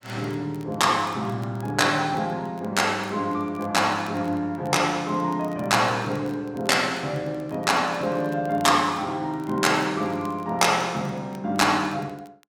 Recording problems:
crackle; vinyl, SNR 29 dB

